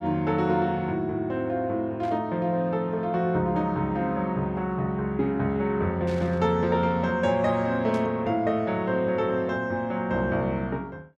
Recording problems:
burst of static; at 2 s, at 6 s and at 8 s; peak -14 dB vs average level

